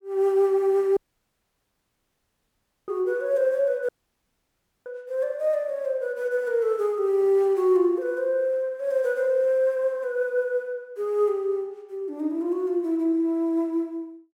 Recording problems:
dropout; at 1 s for 2 s and at 4 s for 1 s

